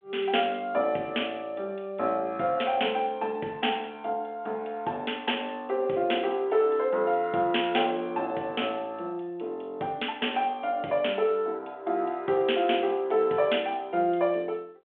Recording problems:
telephone audio; 260 Hz to 3.5 kHz, G.726

